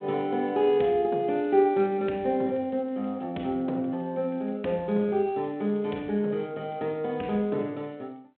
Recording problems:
phone line; 170 Hz to 3.7 kHz, G.726

